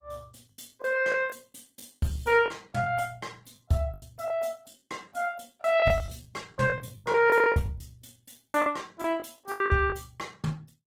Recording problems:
lossy codec; Opus, log-spectral distance 5 dB
lost packets; 11% of the sound replaced, filled with the last packet

